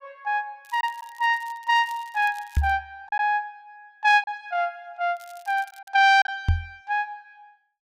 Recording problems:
packet loss; 3% of the sound replaced, filled with silence
crackling; from 0.5 to 3 s and at 5 s; loose cable, SNR 27 dB
microphone thump; at 2.5 s and at 6.5 s; peak +6 dB vs average level

